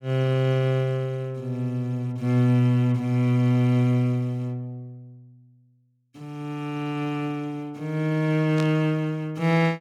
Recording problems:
static burst; at 8.5 s; peak -7 dB vs average level

